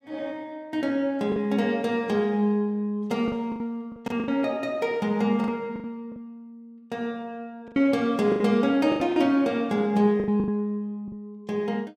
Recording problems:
packet loss; 8% of the sound replaced, filled with the last packet

